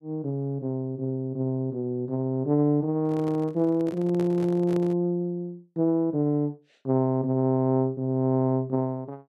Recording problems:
handling noise; from 3 to 5 s; peak -7 dB vs average level

